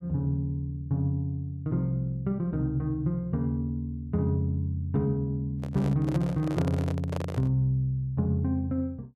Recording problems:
microphone handling noise; from 5.5 to 7.5 s; peak -1 dB vs average level

